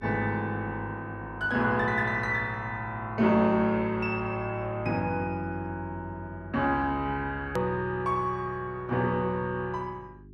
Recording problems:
hum; 50 Hz, harmonics up to 400 Hz, SNR 20 dB
edit click; at 7.5 s

